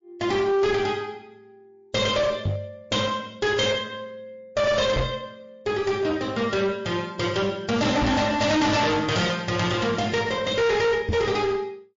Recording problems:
codec artefacts; MP3, log-spectral distance 3 dB, nothing above 6.2 kHz
distorted audio; hard clipping, uneven, signal-to-distortion ratio 6 dB
microphone thump; 4 times, first at 2.5 s; peak +2 dB vs average level

